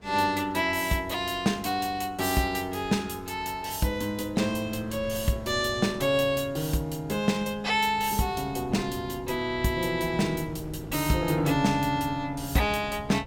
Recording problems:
wind on the microphone; below 290 Hz, SNR 17 dB

